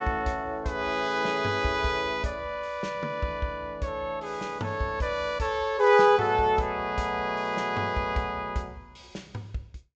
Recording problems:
treble cut off; nothing above 8 kHz

